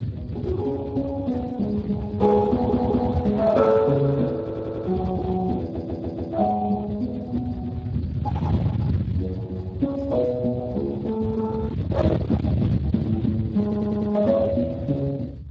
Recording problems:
lossy compression; Speex, then Speex, log-spectral distance 3 dB
distorted audio; hard clipping, uneven, signal-to-distortion ratio 6 dB
low-frequency rumble; below 220 Hz, SNR 5 dB
audio stuttering; 4 times, first at 2.5 s

